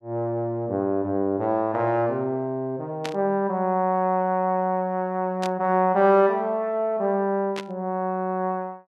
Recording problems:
burst of static; at 3 s, at 5.5 s and at 7.5 s; peak -4 dB vs average level

